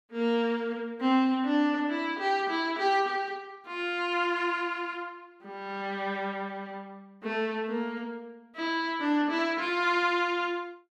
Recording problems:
none

